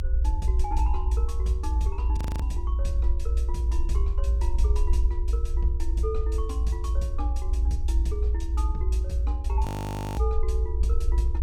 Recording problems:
hum; 60 Hz, harmonics up to 540 Hz, SNR 23 dB
low-frequency rumble; below 60 Hz, strongest tone 58 Hz, SNR -10 dB
audio freezing; at 2 s and at 9.5 s for 0.5 s

